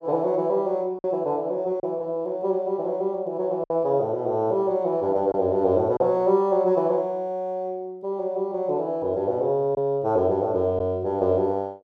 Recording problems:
packet loss; 1.9% of the sound replaced, filled with silence

